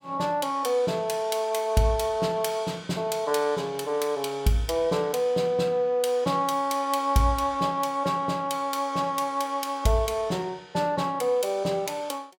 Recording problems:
none

